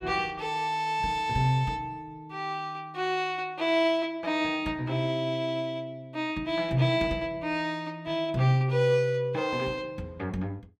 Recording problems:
none

